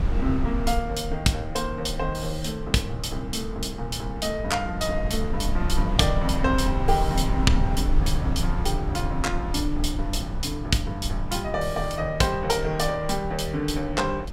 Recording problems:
low-frequency rumble; below 70 Hz, SNR 4 dB

